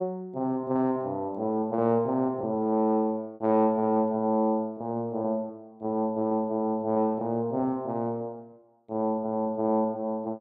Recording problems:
lost packets; 9% of the sound replaced, filled with repeated pitch periods

